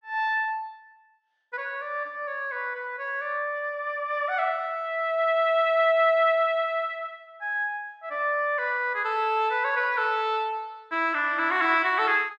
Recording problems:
none

